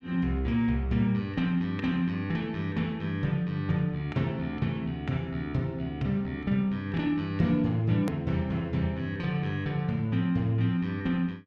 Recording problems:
click at an edit; at 8 s

